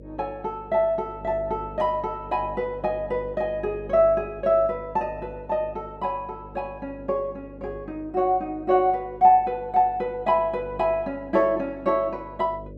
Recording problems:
electrical hum; 50 Hz, harmonics up to 600 Hz, SNR 19 dB

